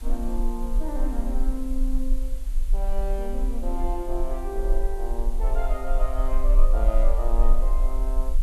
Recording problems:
background hiss; slope -2 dB per octave, SNR 17 dB
low-frequency rumble; below 36 Hz, strongest tone 20 Hz, SNR -6 dB

